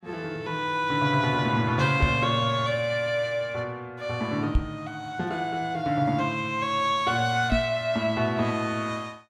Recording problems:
knock on the microphone; at 2 s, at 4.5 s and at 7.5 s; peak +6 dB vs average level

